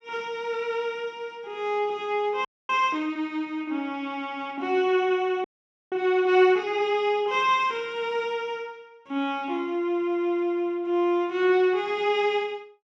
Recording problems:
audio freezing; at 2.5 s and at 5.5 s

